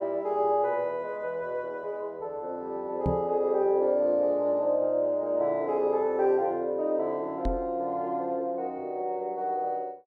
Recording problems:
microphone bump; at 3 s and at 7.5 s; peak +2 dB vs average level

